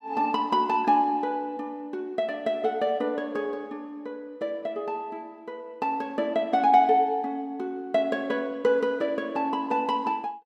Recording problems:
none

